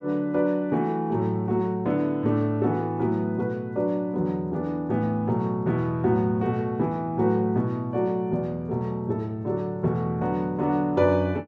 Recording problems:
none

